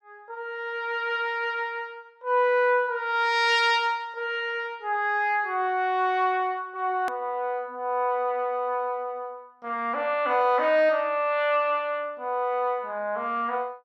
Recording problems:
hard cut with a click; at 7 s

